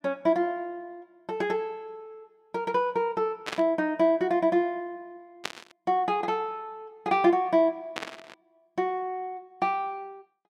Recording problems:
burst of static; at 3.5 s, at 5.5 s and at 8 s; peak 0 dB vs average level

